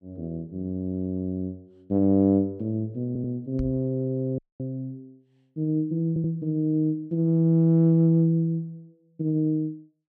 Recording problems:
stutter; at 3 s and at 6 s
microphone bump; at 3.5 s; peak -4 dB vs average level
audio cutting out; at 4.5 s

